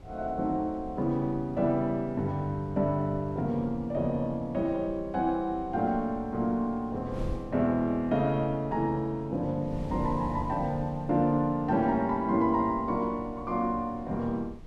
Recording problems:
wind noise; below 140 Hz, SNR 16 dB

